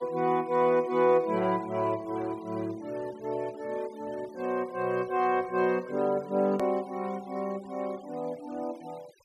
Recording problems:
noise reduction artefacts; signal-to-artefact ratio 23 dB
edit click; at 6.5 s

